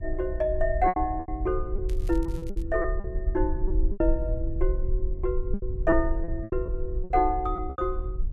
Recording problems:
low-frequency rumble; below 54 Hz, SNR 3 dB
lost packets; 11% of the sound replaced, filled with repeated pitch periods
crackle; at 2 s; loose cable, SNR 24 dB

